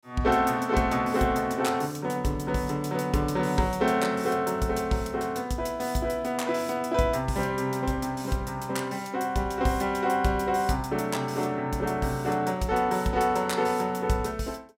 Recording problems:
none

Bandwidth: 16 kHz